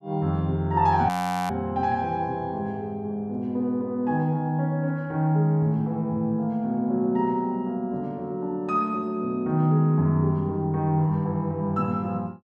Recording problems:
audio freezing; at 1 s

